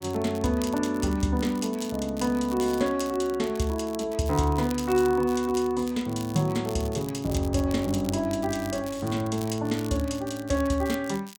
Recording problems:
crackle; vinyl, SNR 18 dB

